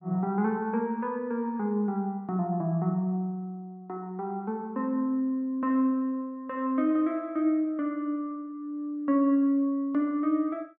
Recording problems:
none

